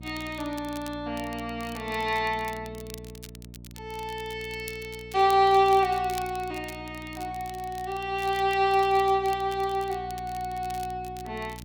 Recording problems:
hum; 60 Hz, harmonics up to 660 Hz, SNR 17 dB
crackle; vinyl, SNR 20 dB

